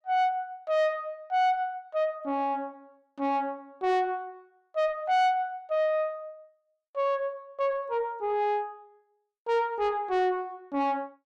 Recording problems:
distorted audio; soft clipping, signal-to-distortion ratio 10 dB

